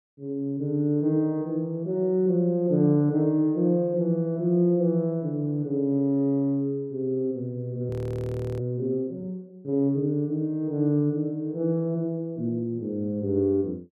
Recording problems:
frozen audio; at 8 s for 0.5 s

